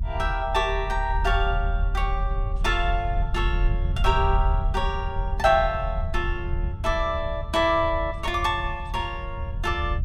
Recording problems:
low-frequency rumble; below 74 Hz, strongest tone 40 Hz, SNR 3 dB

